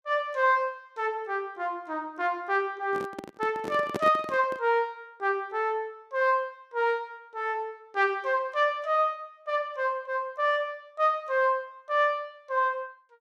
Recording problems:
microphone handling noise; from 3 to 4.5 s; peak +1 dB vs average level

